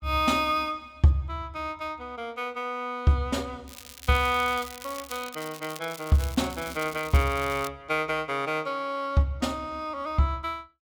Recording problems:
crackling; from 3.5 to 7.5 s; loose cable, SNR 14 dB

